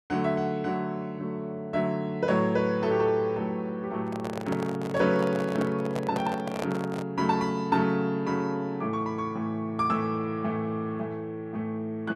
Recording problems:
microphone handling noise; from 4 to 7 s; peak -1 dB vs average level

